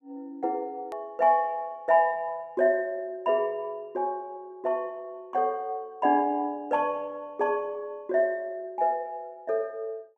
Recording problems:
click at an edit; at 1 s

